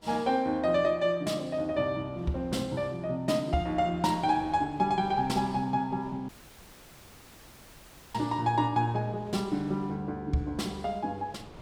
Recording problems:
wind on the microphone; below 870 Hz, SNR 22 dB
dropout; at 6.5 s for 2 s

